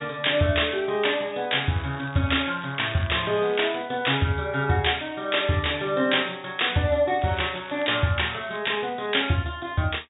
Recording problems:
treble missing; nothing above 4 kHz
crackle; from 2 to 4 s and from 7 to 8.5 s; loose cable, SNR 20 dB

